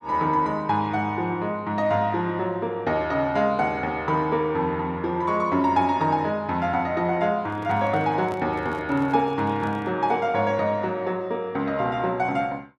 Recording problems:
microphone handling noise; from 7.5 to 10 s; peak -10 dB vs average level

